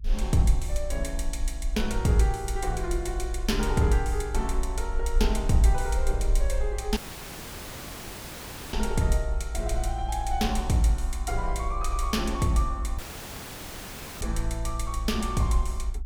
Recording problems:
rumble; below 54 Hz, SNR 4 dB
dropout; at 7 s for 2 s and at 13 s for 1 s

